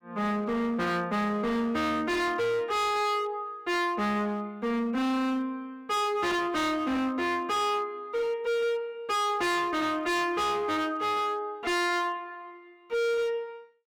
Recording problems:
distorted audio; hard clipping, signal-to-distortion ratio 6 dB

